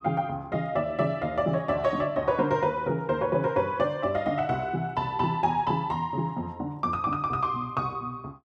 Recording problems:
none

